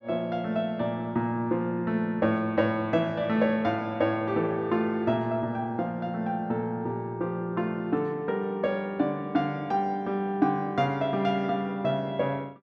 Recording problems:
none

